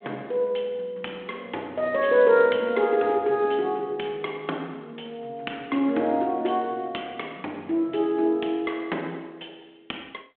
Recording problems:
telephone audio; 240 Hz to 3.4 kHz, G.726

